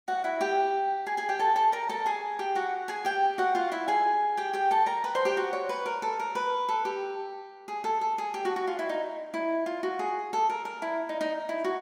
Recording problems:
none

